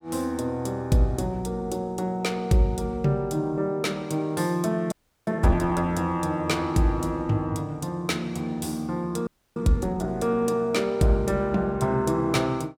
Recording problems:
frozen audio; at 5 s and at 9.5 s

